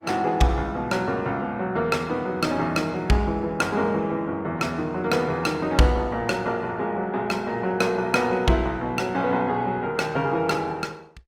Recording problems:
codec artefacts; Opus, log-spectral distance 2 dB, nothing above 19 kHz

